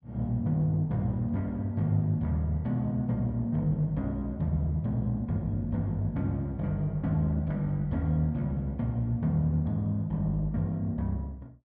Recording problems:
none

